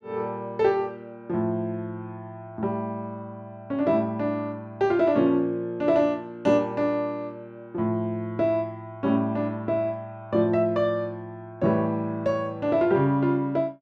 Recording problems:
none

